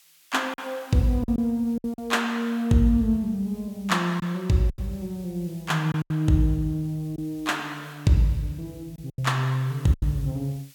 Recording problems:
hiss; SNR 27 dB
lost packets; 6% of the sound replaced, filled with silence

